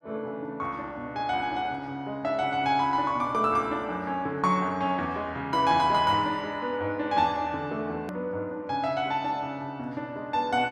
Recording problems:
click at an edit; at 8 s

